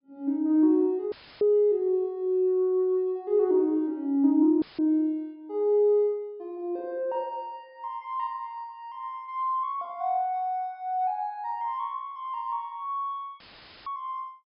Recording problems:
low-pass filter; nothing above 5.5 kHz
dropout; at 1 s, at 4.5 s and at 13 s; filled with static

